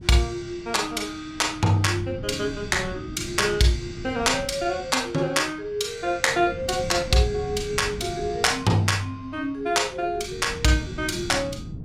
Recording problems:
wind noise; below 210 Hz, SNR 14 dB

